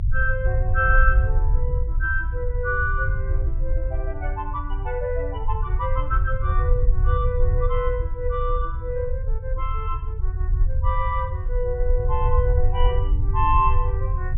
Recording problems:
treble cut off; nothing above 3.6 kHz
rumble; below 70 Hz, SNR -2 dB

